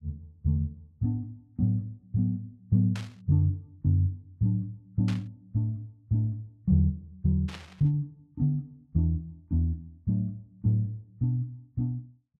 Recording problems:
static burst; at 3 s, at 5 s and at 7.5 s; peak -7 dB vs average level

